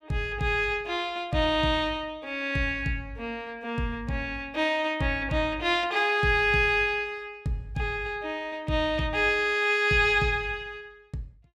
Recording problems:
none

